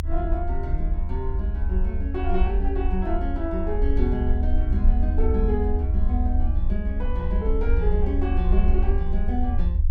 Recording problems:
rumble; below 72 Hz, SNR -4 dB

